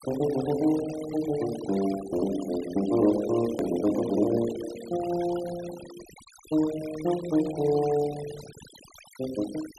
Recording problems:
noise reduction artefacts; signal-to-artefact ratio 16 dB
hard cut with a click; at 3.5 s

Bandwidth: 13 kHz